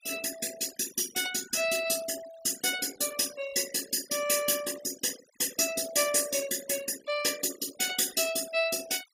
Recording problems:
noise reduction artefacts; signal-to-artefact ratio 15 dB

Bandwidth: 15.5 kHz